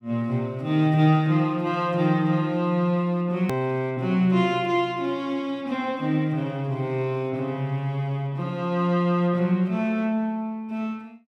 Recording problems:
edit click; at 3.5 s

